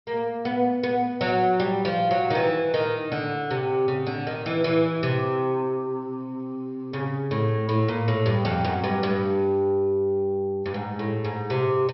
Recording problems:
treble missing; nothing above 5.5 kHz

